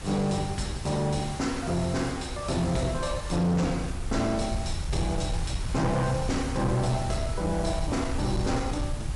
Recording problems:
lossy codec; MP3, log-spectral distance 5 dB, nothing above 11 kHz
distorted audio; hard clipping, signal-to-distortion ratio 11 dB
hiss; slope -2 dB per octave, SNR 13 dB
low-frequency rumble; below 100 Hz, SNR 7 dB
wind on the microphone; below 280 Hz, SNR 19 dB

